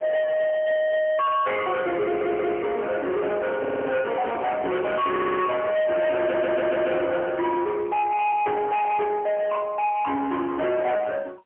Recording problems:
telephone audio; 240 Hz to 3.4 kHz, AMR-NB, then MP3
distorted audio; soft clipping, signal-to-distortion ratio 8 dB
audio stuttering; 4 times, first at 2 s
microphone handling noise; from 3.5 to 6 s; peak -4 dB vs average level

